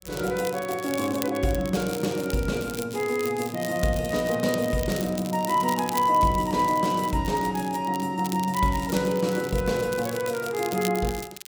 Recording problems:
crackle; vinyl, SNR 14 dB

